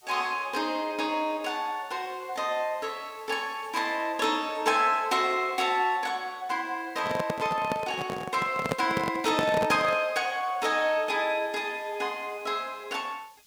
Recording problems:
background hiss; SNR 28 dB
microphone handling noise; from 7 to 10 s; peak +3 dB vs average level

